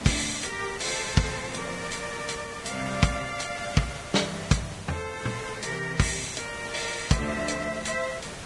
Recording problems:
lossy compression; Vorbis, log-spectral distance 9 dB, nothing above 10.1 kHz
hiss; slope -3 dB per octave, SNR 10 dB

